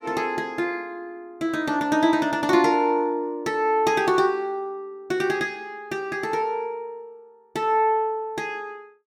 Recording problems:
none

